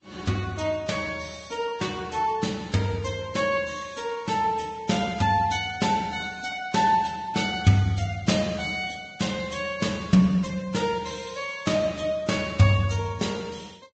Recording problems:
treble cut off; nothing above 7.6 kHz
lossy compression; Vorbis, log-spectral distance 4 dB

